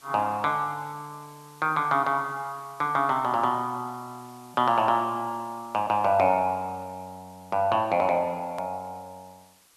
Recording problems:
hiss; slope 0 dB per octave, SNR 27 dB
hard cut with a click; at 8.5 s

